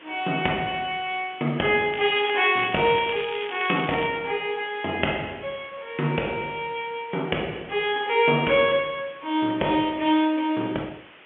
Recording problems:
phone line; 170 Hz to 3.4 kHz, G.711
hiss; SNR 23 dB
crackling; from 2 to 4 s; loose cable, SNR 12 dB

